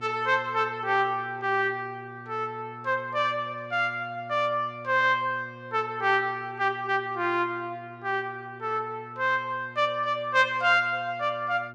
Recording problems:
mains hum; 60 Hz, harmonics up to 1.4 kHz, SNR 20 dB

